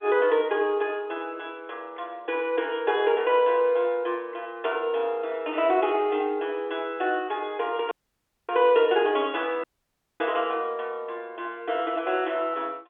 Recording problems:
phone line; 300 Hz to 3.5 kHz, G.711
dropout; at 8 s for 0.5 s and at 9.5 s for 0.5 s

